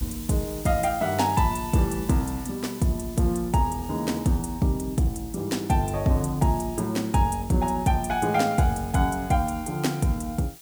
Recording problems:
background hiss; slope +1 dB per octave, SNR 17 dB

